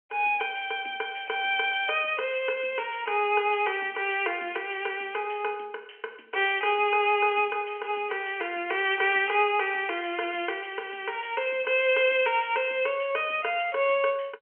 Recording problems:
phone line; 280 Hz to 3.2 kHz, G.711

